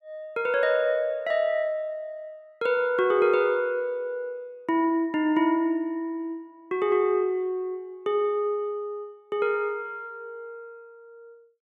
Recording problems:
none

